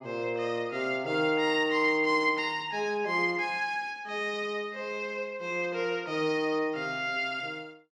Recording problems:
none

